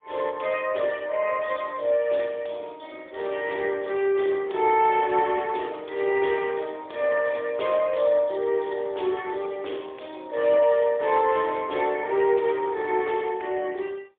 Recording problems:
phone line; 320 Hz to 3.5 kHz, AMR-NB, then MP3

